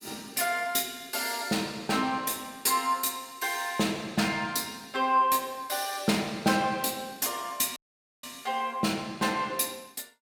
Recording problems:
audio cutting out; at 8 s

